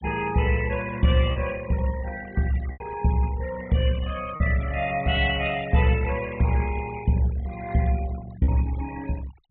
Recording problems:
treble missing; nothing above 4 kHz
denoising artefacts; signal-to-artefact ratio 16 dB
packet loss; 2% of the sound replaced, filled with repeated pitch periods

